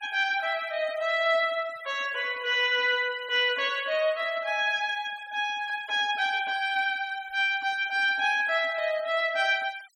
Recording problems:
denoising artefacts; signal-to-artefact ratio 23 dB

